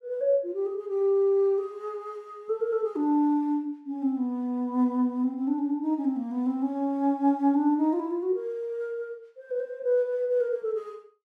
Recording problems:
none

